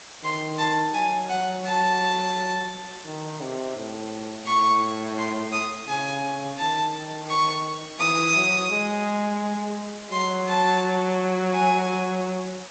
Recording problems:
codec artefacts; AAC, then G.722, log-spectral distance 11 dB
background hiss; slope -1 dB per octave, SNR 17 dB

